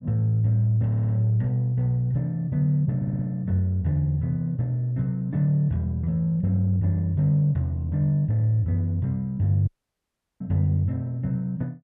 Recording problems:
stutter; at 1 s and at 3 s
audio cutting out; at 9.5 s for 0.5 s

